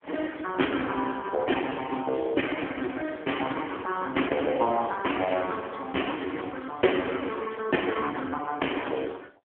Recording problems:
phone line; 220 Hz to 3.2 kHz, AMR-NB

